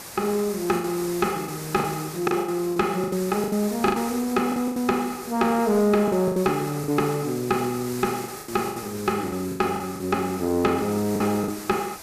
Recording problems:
distortion; soft clipping, signal-to-distortion ratio 11 dB
hiss; SNR 13 dB
packet loss; 11% of the sound replaced, filled with the last packet

